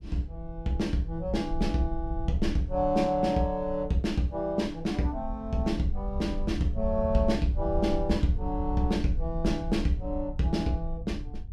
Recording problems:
rumble; below 68 Hz, SNR 8 dB

